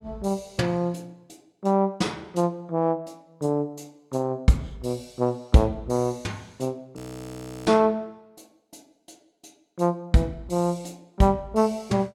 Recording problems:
audio freezing; at 7 s for 0.5 s

